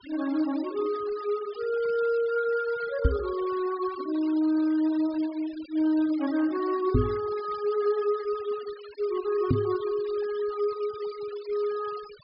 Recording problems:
treble missing; nothing above 5.5 kHz
noise reduction artefacts; signal-to-artefact ratio 20 dB
knock on the microphone; at 3 s, at 7 s and at 9.5 s; peak +8 dB vs average level

